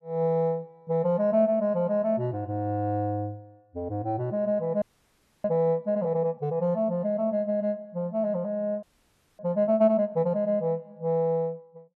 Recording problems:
audio freezing; at 5 s for 0.5 s and at 9 s for 0.5 s

